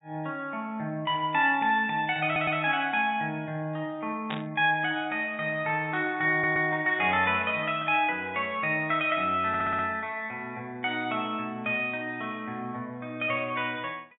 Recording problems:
low-pass filter; nothing above 4 kHz
stutter; at 2.5 s, at 6.5 s and at 9.5 s
static burst; at 4.5 s; peak -4 dB vs average level

